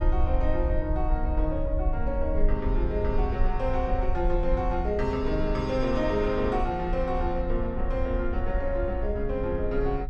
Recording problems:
low-frequency rumble; below 58 Hz, strongest tone 22 Hz, SNR 2 dB

